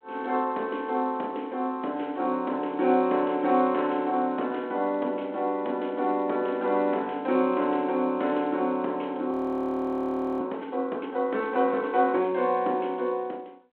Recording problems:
phone line; 220 Hz to 3.5 kHz, G.726
audio freezing; at 9.5 s for 1 s

